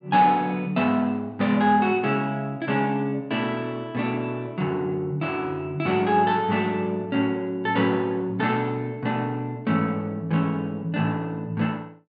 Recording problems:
treble missing; nothing above 4.7 kHz

